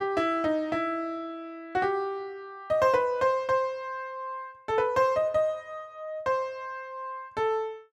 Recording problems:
none

